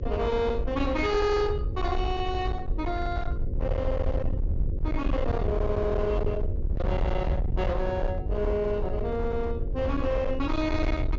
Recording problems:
treble cut off; nothing above 7.2 kHz
distortion; hard clipping, signal-to-distortion ratio 8 dB
hum; 50 Hz, harmonics up to 550 Hz, SNR 12 dB
rumble; below 84 Hz, SNR 3 dB
wind on the microphone; below 100 Hz, SNR 7 dB

